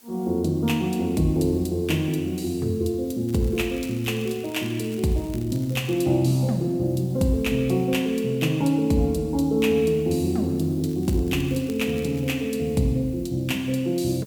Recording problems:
background hiss; SNR 27 dB
crackling; from 3.5 to 5 s, from 5 to 6 s and from 11 to 12 s; loose cable, SNR 24 dB

